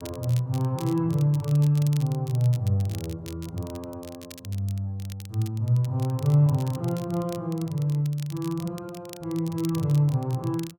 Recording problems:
crackling; vinyl, SNR 20 dB

